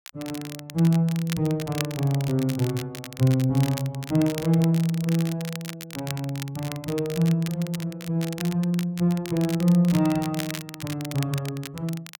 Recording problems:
crackling; vinyl, SNR 13 dB

